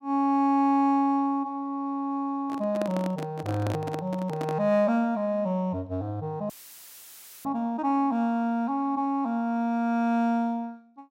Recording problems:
microphone handling noise; from 2.5 to 4.5 s; peak -3 dB vs average level
audio cutting out; at 6.5 s for 1 s; filled with static

